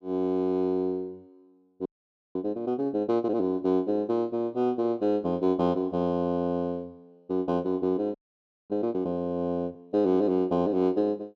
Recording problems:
frozen audio; at 2 s and at 8 s for 0.5 s

